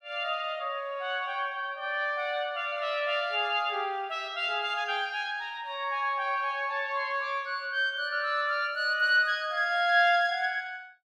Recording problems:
none

